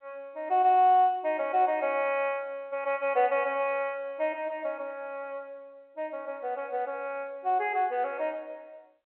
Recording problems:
telephone audio; 320 Hz to 3.3 kHz, G.711

